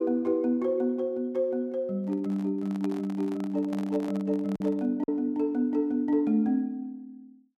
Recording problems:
packet loss; 1.1% of the sound replaced, filled with silence
handling noise; from 2 to 5 s; peak -8 dB vs average level

